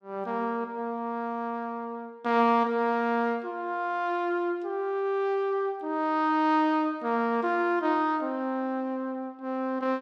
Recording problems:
none

